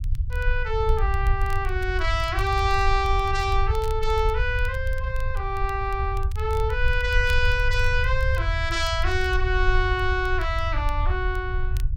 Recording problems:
rumble; below 72 Hz, SNR 2 dB
crackling; vinyl, SNR 24 dB

